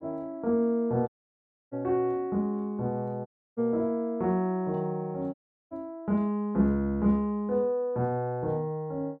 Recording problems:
dropout; at 1 s for 0.5 s, at 3.5 s and at 5.5 s

